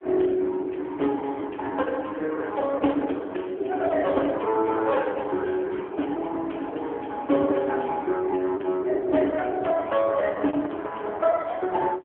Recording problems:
phone line; 240 Hz to 3.3 kHz, AMR-NB
packet loss; 6% of the sound replaced, filled with the last packet

